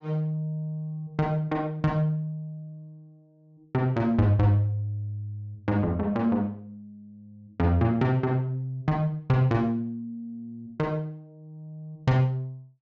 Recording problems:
treble cut off; nothing above 8 kHz

